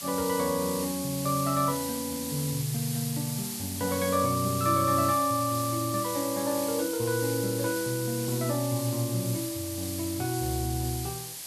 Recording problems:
hiss; SNR 6 dB

